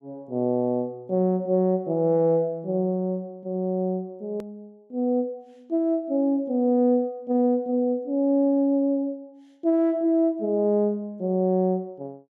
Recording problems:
edit click; at 4.5 s

